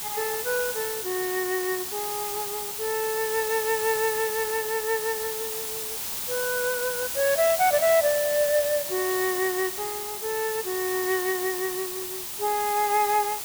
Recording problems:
background hiss; SNR 3 dB

